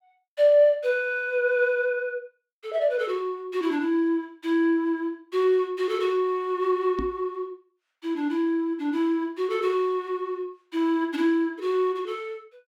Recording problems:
knock on the microphone; at 7 s; peak -3 dB vs average level

